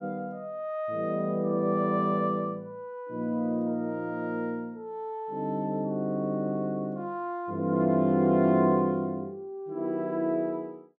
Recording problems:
none

